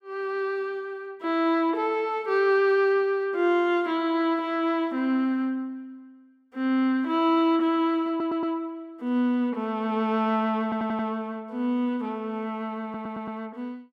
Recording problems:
stutter; at 8 s, at 11 s and at 13 s

